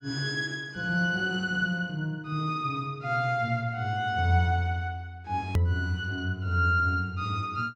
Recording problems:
hard cut with a click; at 5.5 s

